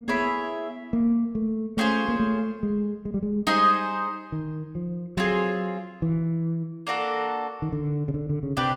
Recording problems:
none

